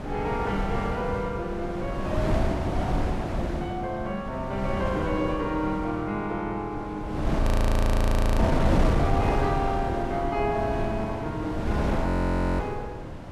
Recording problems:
wind noise; below 370 Hz, SNR -1 dB
frozen audio; at 7.5 s for 1 s and at 12 s for 0.5 s

